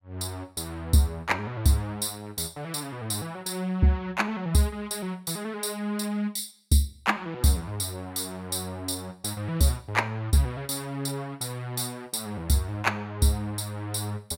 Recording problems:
none

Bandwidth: 16 kHz